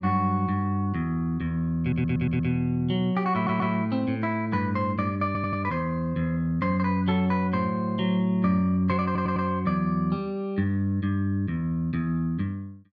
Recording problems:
audio stuttering; 4 times, first at 2 s

